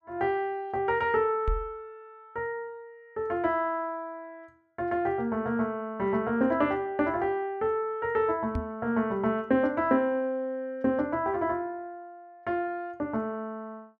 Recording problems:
knock on the microphone; at 1.5 s and at 8.5 s; peak +2 dB vs average level

